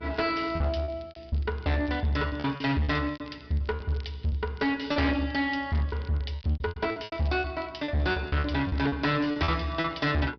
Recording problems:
treble cut off; nothing above 5.5 kHz
distorted audio; hard clipping, uneven, signal-to-distortion ratio 7 dB
hum; 60 Hz, harmonics up to 960 Hz, SNR 24 dB
crackle; vinyl, SNR 27 dB
packet loss; 15% of the sound replaced, filled with repeated pitch periods

